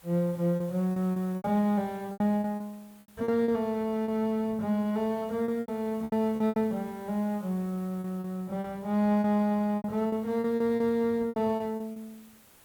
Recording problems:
hiss; slope -3 dB per octave, SNR 27 dB
lost packets; 12% of the sound replaced, filled with repeated pitch periods

